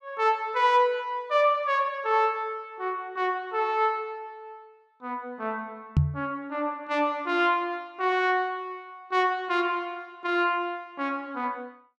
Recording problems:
microphone bump; at 6 s; peak +8 dB vs average level

